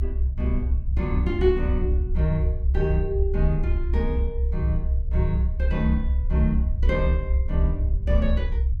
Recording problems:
rumble; below 68 Hz, SNR -3 dB

